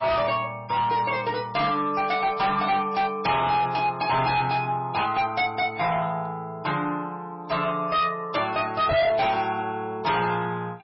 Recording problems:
codec artefacts; MP3, log-spectral distance 3 dB, nothing above 5.5 kHz
distorted audio; hard clipping, uneven, signal-to-distortion ratio 8 dB
microphone bump; at 9 s; peak 0 dB vs average level

